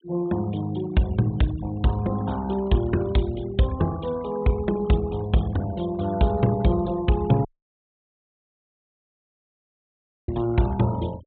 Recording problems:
treble missing; nothing above 4 kHz
noise reduction artefacts; signal-to-artefact ratio 21 dB
audio cutting out; at 7.5 s for 3 s

